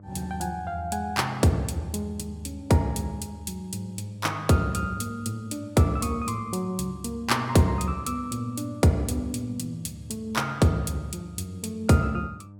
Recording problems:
hum; 50 Hz, harmonics up to 600 Hz, SNR 20 dB

